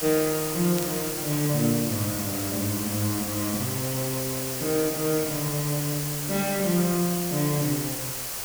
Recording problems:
background hiss; slope -1 dB per octave, SNR 2 dB
crackle; at 1 s; loose cable, SNR 14 dB

